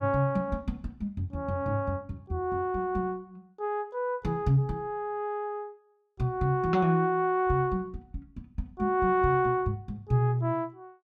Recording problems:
none

